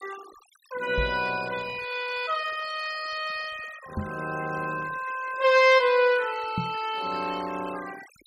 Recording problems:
denoising artefacts; signal-to-artefact ratio 18 dB
knock on the microphone; at 1 s, at 4 s and at 6.5 s; peak 0 dB vs average level

